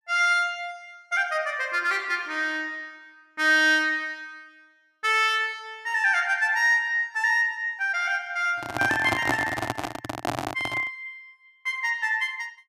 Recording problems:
microphone handling noise; from 8.5 to 11 s; peak +3 dB vs average level

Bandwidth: 14.5 kHz